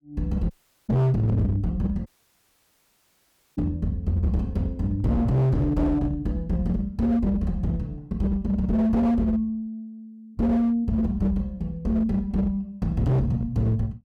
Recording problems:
distortion; hard clipping, signal-to-distortion ratio 7 dB
audio cutting out; at 0.5 s and at 2 s for 1.5 s

